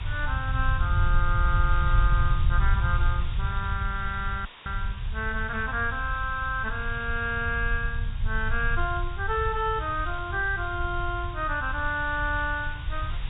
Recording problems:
treble cut off; nothing above 4 kHz
background hiss; SNR 15 dB
rumble; below 82 Hz, SNR 1 dB
audio cutting out; at 4.5 s

